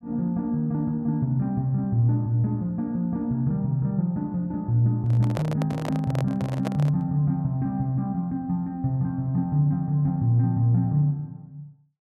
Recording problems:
microphone handling noise; from 5 to 7 s; peak -3 dB vs average level

